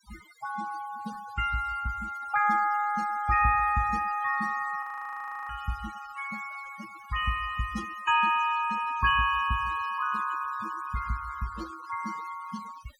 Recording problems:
denoising artefacts; signal-to-artefact ratio 16 dB
audio freezing; at 5 s for 0.5 s

